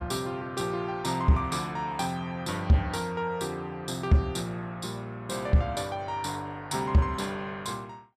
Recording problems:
distortion; soft clipping, signal-to-distortion ratio 12 dB

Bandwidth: 14.5 kHz